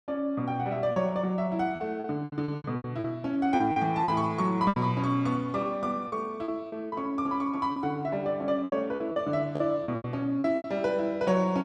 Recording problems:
packet loss; 11% of the sound replaced, filled with repeated pitch periods

